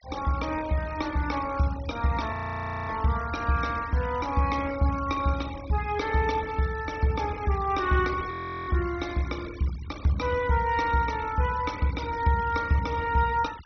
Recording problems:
treble missing; nothing above 6.1 kHz
noise reduction artefacts; signal-to-artefact ratio 18 dB
audio freezing; at 2.5 s for 0.5 s and at 8.5 s

